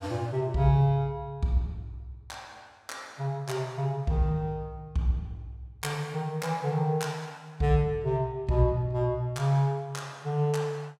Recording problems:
none

